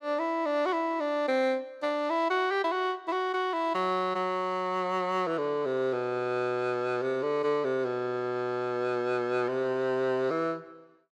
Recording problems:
none

